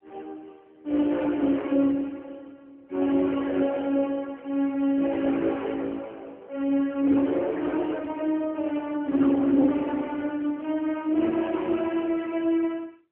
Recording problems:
telephone audio; 220 Hz to 3.3 kHz, AMR-NB

